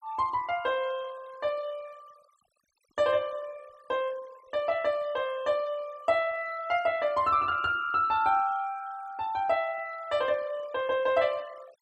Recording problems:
noise reduction artefacts; signal-to-artefact ratio 23 dB

